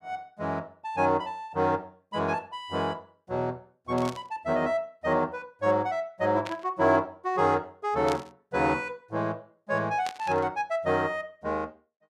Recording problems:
static burst; 4 times, first at 4 s; peak -5 dB vs average level

